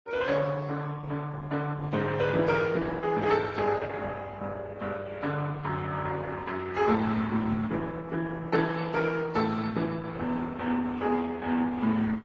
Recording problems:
lossy compression; Opus, then AAC, log-spectral distance 4 dB, nothing above 6.9 kHz

